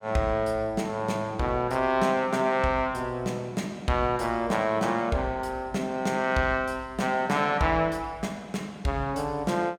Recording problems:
none

